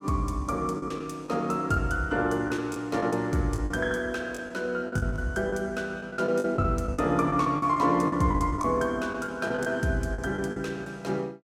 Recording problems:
lost packets; 10% of the sound replaced, filled with the last packet

